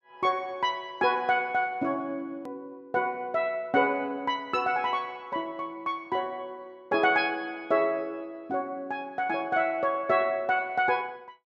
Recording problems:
edit click; at 2.5 s

